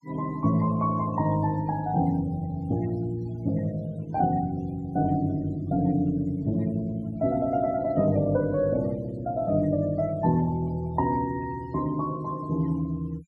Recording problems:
denoising artefacts; signal-to-artefact ratio 24 dB

